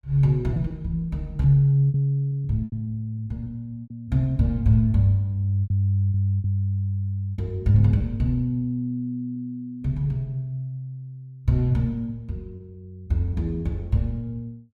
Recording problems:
packet loss; 5% of the sound replaced, filled with repeated pitch periods

